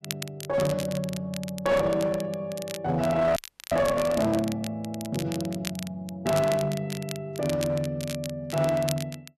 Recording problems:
distortion; hard clipping, uneven, signal-to-distortion ratio 10 dB
crackle; vinyl, SNR 12 dB
audio freezing; at 3.5 s

